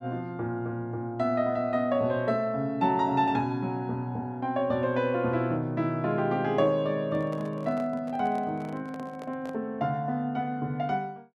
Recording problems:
microphone handling noise; from 7 to 9.5 s; peak -11 dB vs average level

